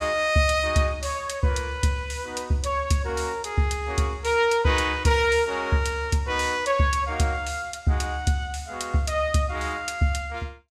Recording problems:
none

